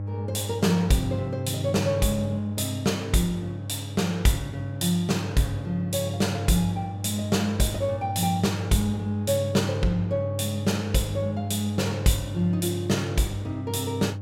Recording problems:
hum; 50 Hz, harmonics up to 600 Hz, SNR 7 dB

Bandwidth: 16 kHz